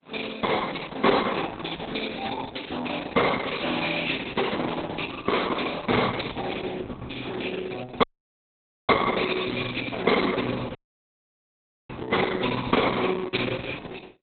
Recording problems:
codec artefacts; Opus, log-spectral distance 10 dB, nothing above 4 kHz
audio cutting out; at 8 s for 1 s and at 11 s for 1 s

